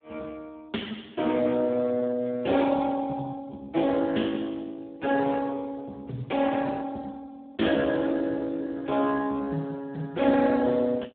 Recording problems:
phone line; 170 Hz to 2.1 kHz, Speex

